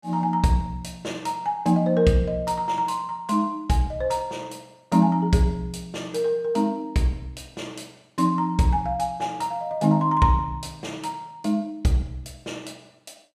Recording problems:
none

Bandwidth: 15 kHz